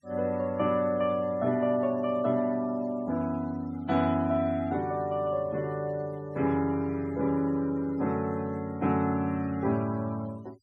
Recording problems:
noise reduction artefacts; signal-to-artefact ratio 26 dB

